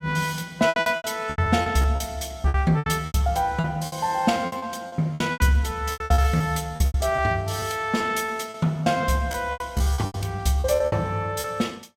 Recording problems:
packet loss; 17% of the sound replaced, filled with repeated pitch periods

